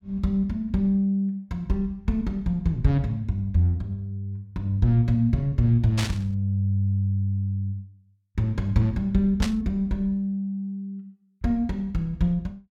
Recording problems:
burst of static; at 6 s and at 9.5 s; peak 0 dB vs average level

